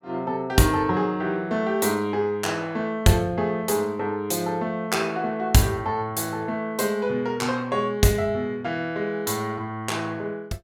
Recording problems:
none

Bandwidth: 18.5 kHz